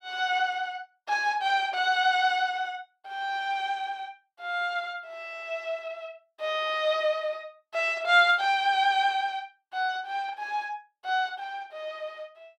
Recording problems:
none

